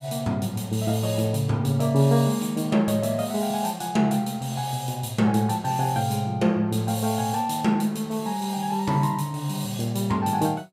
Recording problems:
none

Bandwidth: 15.5 kHz